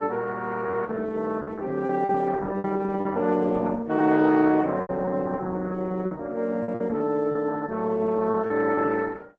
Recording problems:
codec artefacts; Vorbis, then Opus, log-spectral distance 3 dB
lost packets; 9% of the sound replaced, filled with repeated pitch periods

